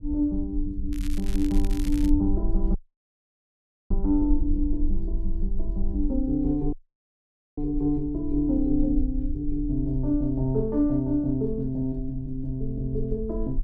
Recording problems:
low-frequency rumble; below 44 Hz, strongest tone 18 Hz, SNR 5 dB
crackle; from 1 to 2 s; loose cable, SNR 17 dB
dropout; at 3 s for 1 s and at 6.5 s for 1 s

